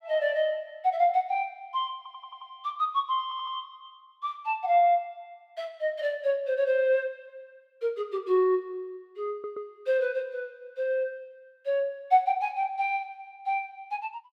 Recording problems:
stutter; at 2 s, at 3 s and at 9.5 s

